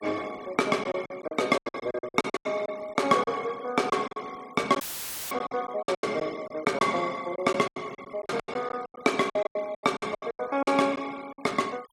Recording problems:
noise reduction artefacts; signal-to-artefact ratio 22 dB
lost packets; 16% of the sound replaced, filled with silence
audio cutting out; at 5 s for 0.5 s; filled with static

